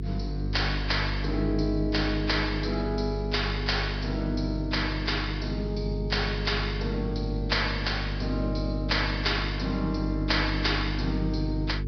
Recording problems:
low-pass filter; nothing above 5.5 kHz
hum; 50 Hz, harmonics up to 450 Hz, SNR 3 dB

